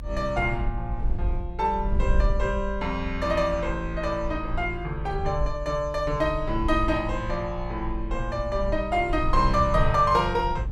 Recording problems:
rumble; below 56 Hz, SNR 6 dB

